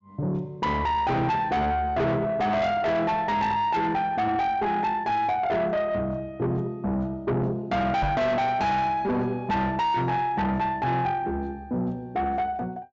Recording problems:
treble missing; nothing above 7.5 kHz
distorted audio; soft clipping, signal-to-distortion ratio 7 dB
microphone thump; at 8 s; peak +3 dB vs average level

